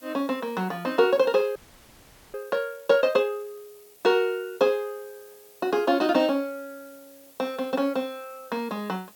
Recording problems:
hiss; SNR 26 dB
frozen audio; at 1.5 s for 1 s

